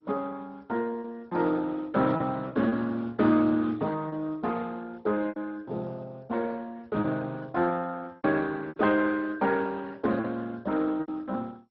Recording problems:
codec artefacts; Speex, then MP2, log-spectral distance 3 dB
lost packets; 5% of the sound replaced, filled with repeated pitch periods

